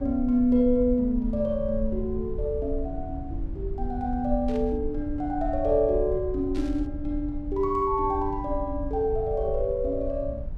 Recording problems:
low-frequency rumble; below 68 Hz, SNR 9 dB
burst of static; at 4.5 s and at 6.5 s; peak -14 dB vs average level

